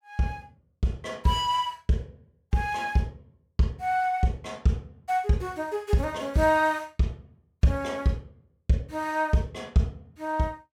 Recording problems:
none

